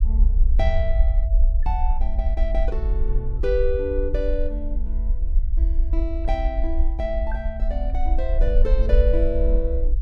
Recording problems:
rumble; below 52 Hz, SNR -5 dB

